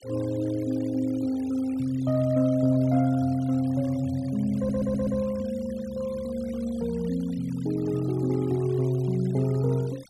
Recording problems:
noise reduction artefacts; signal-to-artefact ratio 23 dB
stutter; at 4.5 s

